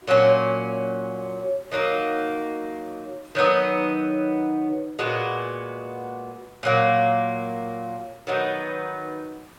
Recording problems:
hiss; SNR 27 dB

